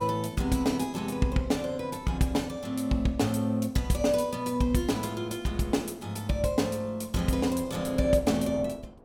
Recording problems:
wind noise; below 600 Hz, SNR 21 dB

